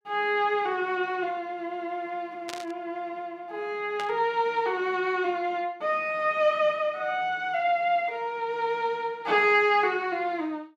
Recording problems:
static burst; at 2.5 s and at 4 s; peak -6 dB vs average level

